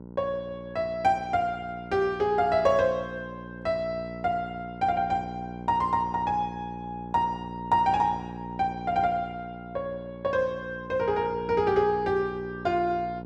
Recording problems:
hum; 60 Hz, harmonics up to 1 kHz, SNR 13 dB

